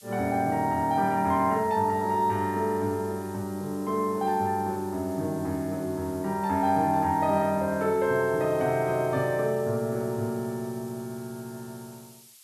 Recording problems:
hiss; slope +6 dB per octave, SNR 22 dB

